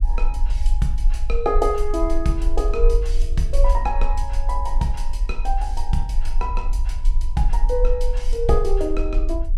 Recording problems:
rumble; below 42 Hz, strongest tone 22 Hz, SNR -1 dB

